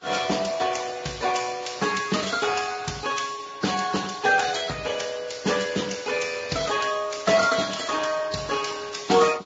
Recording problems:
lossy codec; Speex, then Vorbis, log-spectral distance 7 dB, nothing above 7.3 kHz

